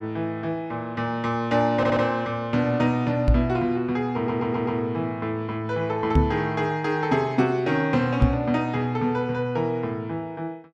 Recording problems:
stutter; at 2 s and at 4 s
knock on the microphone; at 3.5 s, at 6 s and at 8 s; peak +9 dB vs average level

